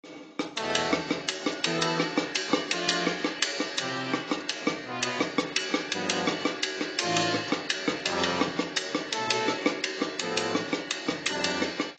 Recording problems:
lossy compression; AAC, log-spectral distance 6 dB, nothing above 7.6 kHz

